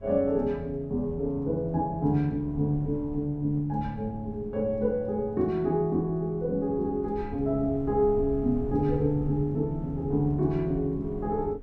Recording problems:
wind on the microphone; below 110 Hz, SNR 15 dB

